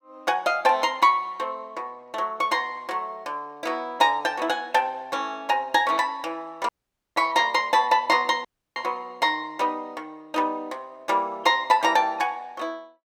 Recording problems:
audio cutting out; at 6.5 s and at 8.5 s

